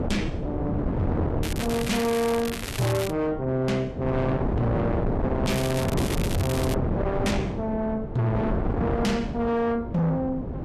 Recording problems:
lossy compression; Vorbis, log-spectral distance 2 dB, nothing above 14.6 kHz
distorted audio; soft clipping, signal-to-distortion ratio 7 dB
wind on the microphone; below 420 Hz, SNR 2 dB
crackling; from 1.5 to 3 s and from 5.5 to 7 s; loose cable, SNR 7 dB

